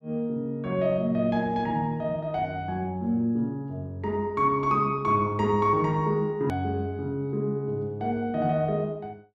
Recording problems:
hard cut with a click; at 6.5 s

